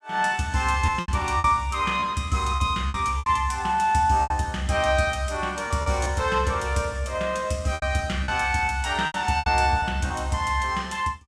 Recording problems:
packet loss; 8% of the sound replaced, filled with repeated pitch periods

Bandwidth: 14.5 kHz